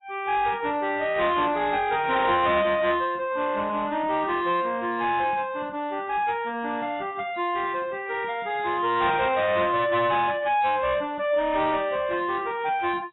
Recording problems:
codec artefacts; AAC, then AAC, log-spectral distance 2 dB, nothing above 3.9 kHz
distortion; soft clipping, signal-to-distortion ratio 12 dB

